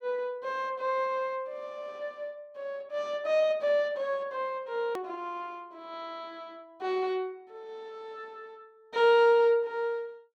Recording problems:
click at an edit; at 5 s

